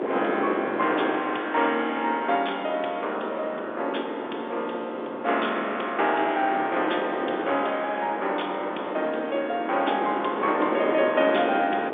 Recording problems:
phone line; 280 Hz to 3.6 kHz, G.711
wind noise; below 640 Hz, SNR 6 dB

